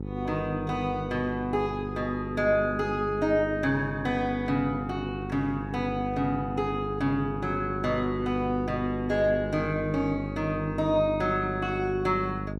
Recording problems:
electrical hum; 50 Hz, harmonics up to 550 Hz, SNR 7 dB

